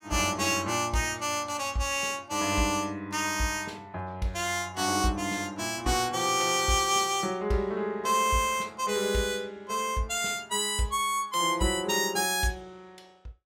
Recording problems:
none

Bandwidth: 16.5 kHz